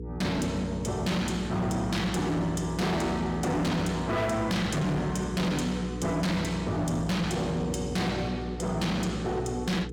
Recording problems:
distorted audio; hard clipping, signal-to-distortion ratio 8 dB
hum; 60 Hz, harmonics up to 480 Hz, SNR 10 dB

